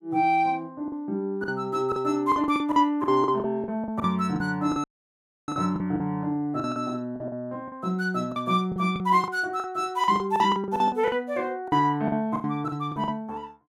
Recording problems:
packet loss; 13% of the sound replaced, filled with the last packet
dropout; at 5 s for 0.5 s

